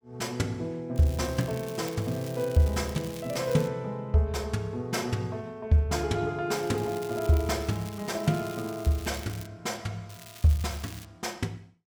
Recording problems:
crackle; from 1 to 3.5 s, from 6.5 to 9.5 s and at 10 s; loose cable, SNR 17 dB

